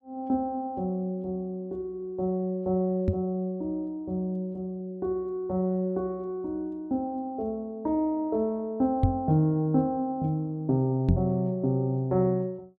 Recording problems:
microphone thump; at 3 s, at 9 s and at 11 s; peak +9 dB vs average level

